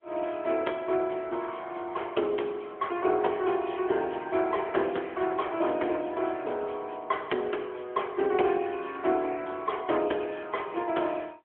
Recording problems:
telephone audio; 280 Hz to 3.3 kHz, AMR-NB

